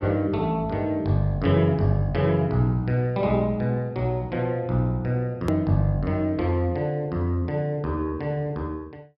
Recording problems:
treble missing; nothing above 5.4 kHz
hard cut with a click; at 5.5 s

